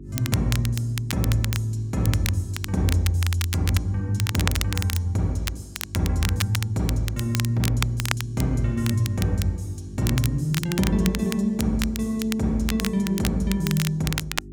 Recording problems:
mains hum; 50 Hz, harmonics up to 400 Hz, SNR 17 dB
crackle; vinyl, SNR 8 dB

